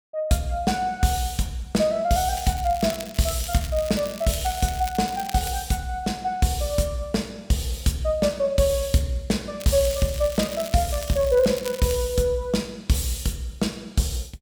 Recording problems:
crackle; from 2.5 to 5.5 s and from 9.5 to 12 s; loose cable, SNR 13 dB

